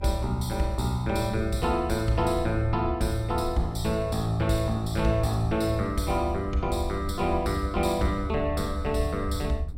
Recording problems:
low-frequency rumble; below 76 Hz, SNR 7 dB

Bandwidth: 16 kHz